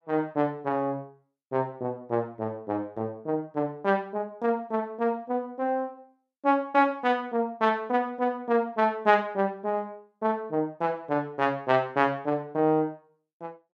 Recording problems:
none

